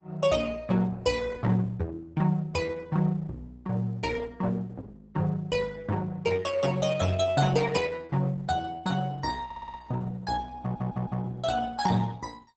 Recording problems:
lossy compression; Opus, log-spectral distance 3 dB, nothing above 8 kHz
audio stuttering; at 9.5 s and at 11 s

